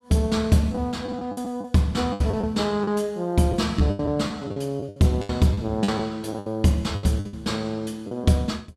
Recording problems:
packet loss; 12% of the sound replaced, filled with the last packet

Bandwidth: 14.5 kHz